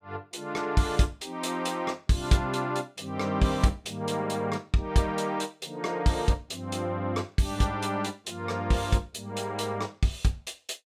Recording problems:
none

